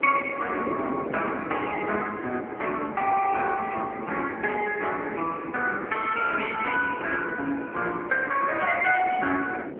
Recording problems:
telephone audio; 240 Hz to 3.5 kHz, AMR-NB
wind noise; below 540 Hz, SNR 10 dB

